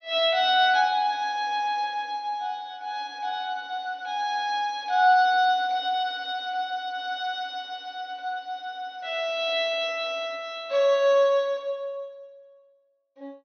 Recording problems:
treble missing; nothing above 6.2 kHz

